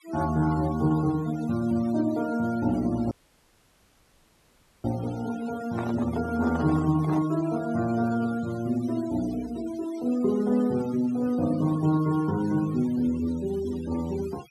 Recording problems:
noise reduction artefacts; signal-to-artefact ratio 19 dB
audio cutting out; at 3 s for 1.5 s
microphone handling noise; from 5.5 to 7.5 s; peak -6 dB vs average level

